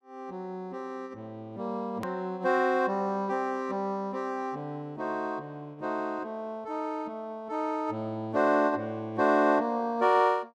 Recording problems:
hard cut with a click; at 2 s

